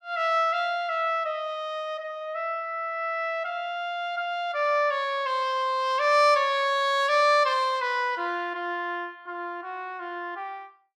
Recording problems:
none

